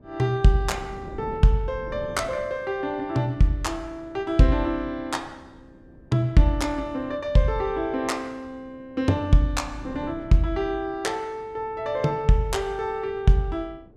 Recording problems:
wind noise; below 320 Hz, SNR 21 dB

